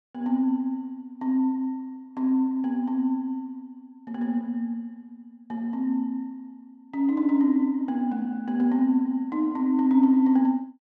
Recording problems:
none

